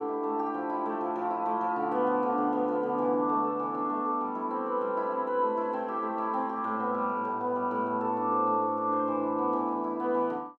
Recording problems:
none

